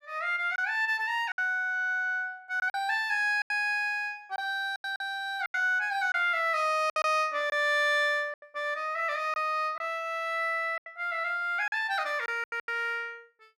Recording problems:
lost packets; 7% of the sound replaced, filled with silence

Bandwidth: 14.5 kHz